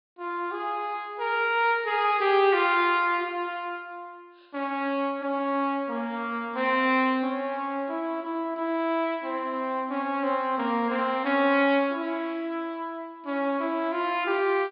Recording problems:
low-pass filter; nothing above 5 kHz

